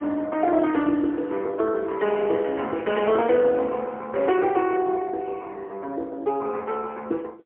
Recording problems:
phone line; 260 Hz to 3.2 kHz, AMR-NB, then MP3

